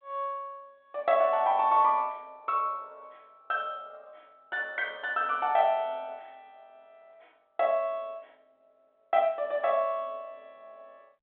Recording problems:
phone line; 320 Hz to 4 kHz, G.726

